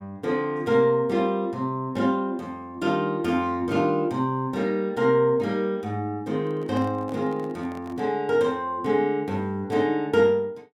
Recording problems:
microphone handling noise; from 6.5 to 8 s; peak -11 dB vs average level

